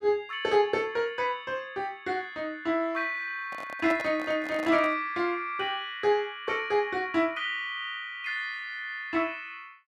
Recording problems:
microphone handling noise; from 3.5 to 5 s; peak -4 dB vs average level

